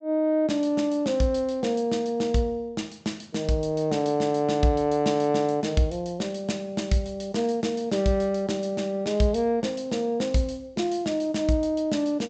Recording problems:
treble missing; nothing above 8 kHz

